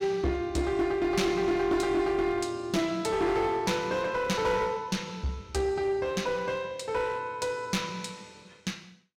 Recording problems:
distorted audio; hard clipping, uneven, signal-to-distortion ratio 9 dB

